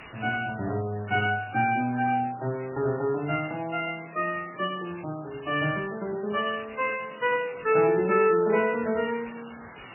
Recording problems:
codec artefacts; MP3, log-spectral distance 15 dB, nothing above 2.4 kHz
background hiss; SNR 19 dB

